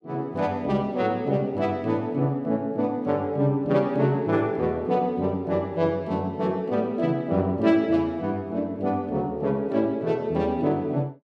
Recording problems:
none

